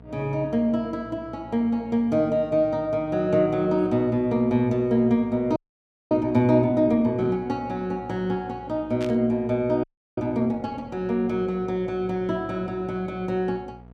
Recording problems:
electrical hum; 60 Hz, harmonics up to 960 Hz, SNR 22 dB
frozen audio; at 5.5 s for 0.5 s and at 10 s
burst of static; at 9 s; peak -9 dB vs average level

